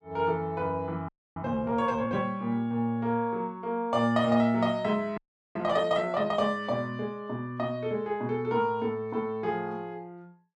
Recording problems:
frozen audio; at 1 s and at 5 s

